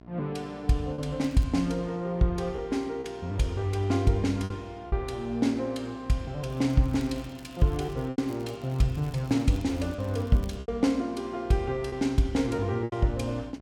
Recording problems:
hum; 60 Hz, harmonics up to 1.7 kHz, SNR 22 dB
lost packets; 4% of the sound replaced, filled with repeated pitch periods
crackling; at 1 s and from 6.5 to 11 s; loose cable, SNR 27 dB

